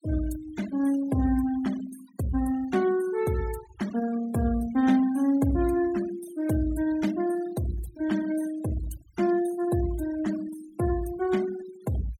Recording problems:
denoising artefacts; signal-to-artefact ratio 16 dB

